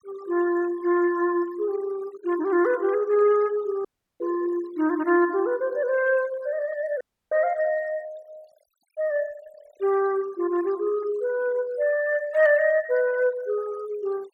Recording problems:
noise reduction artefacts; signal-to-artefact ratio 23 dB
audio cutting out; at 4 s and at 7 s

